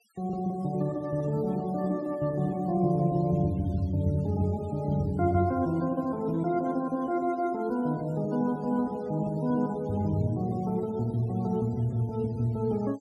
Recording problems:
noise reduction artefacts; signal-to-artefact ratio 28 dB

